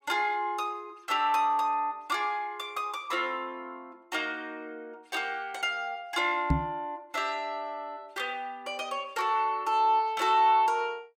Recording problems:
knock on the microphone; at 6.5 s; peak +7 dB vs average level

